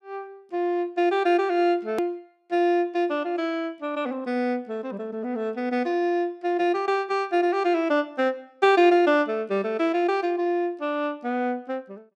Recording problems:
hard cut with a click; at 2 s

